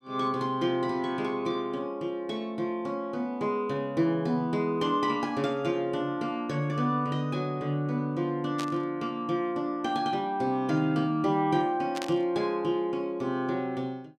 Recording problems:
burst of static; at 8.5 s and at 12 s; peak -3 dB vs average level

